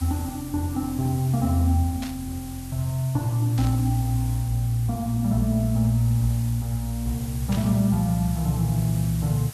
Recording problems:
hiss; slope +1 dB per octave, SNR 17 dB
burst of static; at 2 s, at 3.5 s and at 7.5 s; peak -9 dB vs average level

